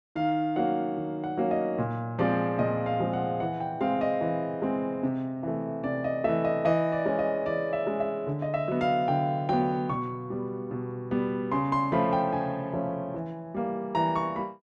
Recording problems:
none

